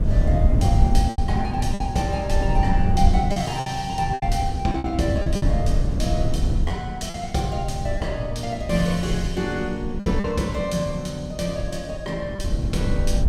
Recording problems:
wind on the microphone; below 96 Hz, SNR -1 dB
lost packets; 5% of the sound replaced, filled with repeated pitch periods

